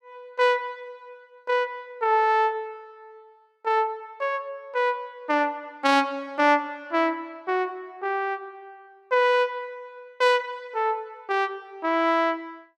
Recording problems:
none

